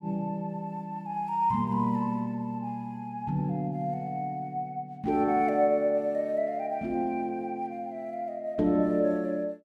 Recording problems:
none

